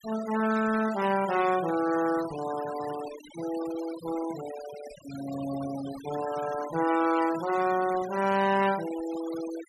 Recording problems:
noise reduction artefacts; signal-to-artefact ratio 13 dB

